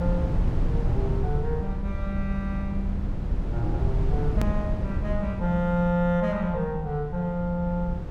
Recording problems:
low-frequency rumble; below 130 Hz, SNR 1 dB
click at an edit; at 4.5 s

